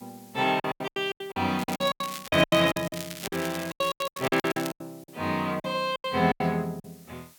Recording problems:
background hiss; slope +1 dB per octave, SNR 26 dB
packet loss; 20% of the sound replaced, filled with silence
crackle; from 1.5 to 5 s; loose cable, SNR 12 dB

